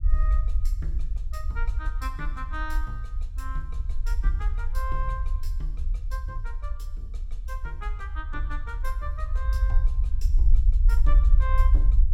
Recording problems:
rumble; below 52 Hz, SNR -11 dB

